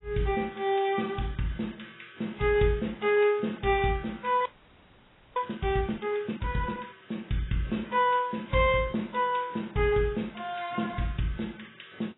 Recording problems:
lossy codec; AAC, log-spectral distance 5 dB, nothing above 3.7 kHz
frozen audio; at 4.5 s for 1 s

